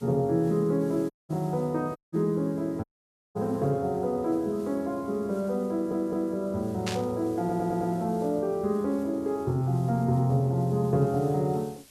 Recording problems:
background hiss; slope 0 dB per octave, SNR 27 dB
dropout; at 1 s, at 2 s and at 3 s for 0.5 s
audio stuttering; at 5.5 s and at 7.5 s
static burst; at 7 s; peak -1 dB vs average level

